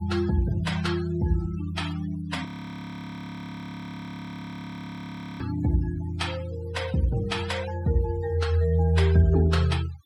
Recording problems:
denoising artefacts; signal-to-artefact ratio 14 dB
frozen audio; at 2.5 s for 3 s

